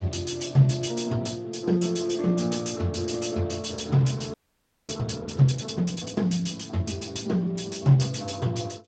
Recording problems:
lossy codec; Speex, log-spectral distance 7 dB, nothing above 7.6 kHz
frozen audio; at 4.5 s for 0.5 s

